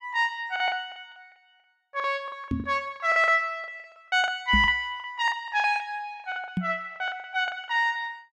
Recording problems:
lost packets; 15% of the sound replaced, filled with the last packet
microphone thump; at 2.5 s, at 4.5 s and at 6.5 s; peak +3 dB vs average level

